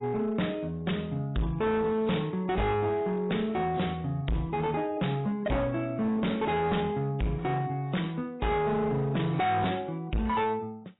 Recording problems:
codec artefacts; AAC, log-spectral distance 3 dB, nothing above 3.8 kHz
distortion; hard clipping, signal-to-distortion ratio 8 dB

